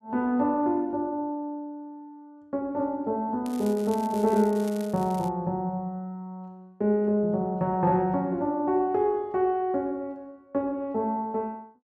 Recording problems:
crackling; from 3.5 to 5.5 s; loose cable, SNR 20 dB

